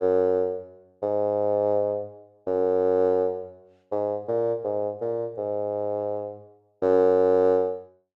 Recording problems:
none

